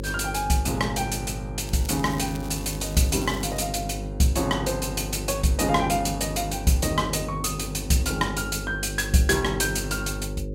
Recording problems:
hum; 50 Hz, harmonics up to 550 Hz, SNR 9 dB
crackle; from 1.5 to 3.5 s; loose cable, SNR 17 dB

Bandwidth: 16 kHz